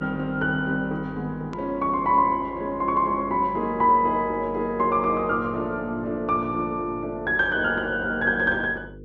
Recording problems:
treble missing; nothing above 7.9 kHz
electrical hum; 50 Hz, harmonics up to 500 Hz, SNR 20 dB
edit click; at 1.5 s

